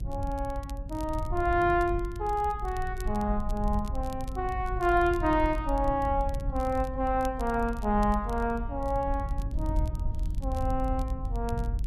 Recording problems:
rumble; below 76 Hz, SNR 5 dB
crackle; vinyl, SNR 25 dB

